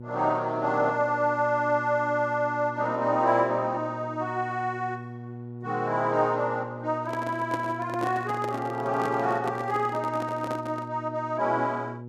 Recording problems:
electrical hum; 60 Hz, harmonics up to 840 Hz, SNR 13 dB
handling noise; from 7 to 11 s; peak -3 dB vs average level

